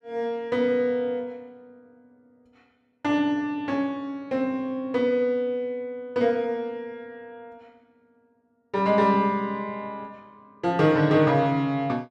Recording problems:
none

